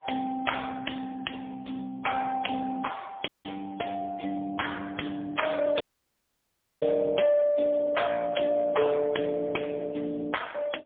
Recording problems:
phone line; 220 Hz to 3.4 kHz, AMR-NB, then MP3
audio cutting out; at 3.5 s and at 6 s for 1 s

